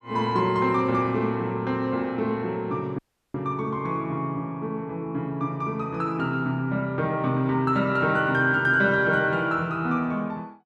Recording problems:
dropout; at 3 s

